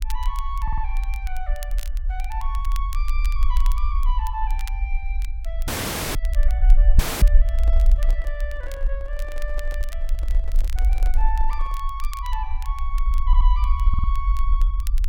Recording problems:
low-frequency rumble; below 46 Hz, SNR -10 dB
crackling; vinyl, SNR 12 dB
stutter; at 0.5 s, at 13 s and at 14 s
dropout; at 5.5 s and at 7 s
microphone handling noise; from 7.5 to 12 s; peak -4 dB vs average level

